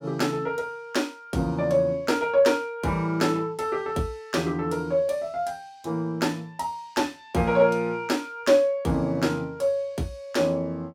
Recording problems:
none

